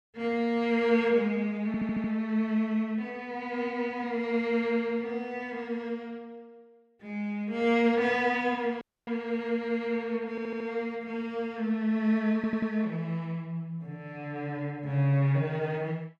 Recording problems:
audio stuttering; at 1.5 s, at 10 s and at 12 s
dropout; at 9 s

